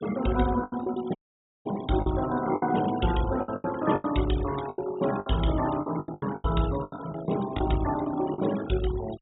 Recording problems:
treble missing; nothing above 4 kHz
noise reduction artefacts; signal-to-artefact ratio 13 dB
lost packets; 12% of the sound replaced, filled with the last packet
dropout; at 1 s for 0.5 s

